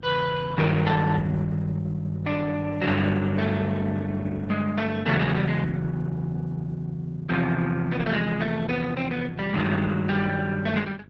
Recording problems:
codec artefacts; Opus, log-spectral distance 3 dB, nothing above 7.6 kHz
electrical hum; 50 Hz, harmonics up to 800 Hz, SNR 22 dB

